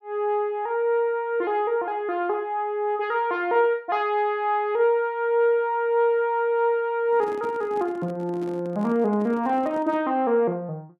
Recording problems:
handling noise; from 7 to 10 s; peak -11 dB vs average level

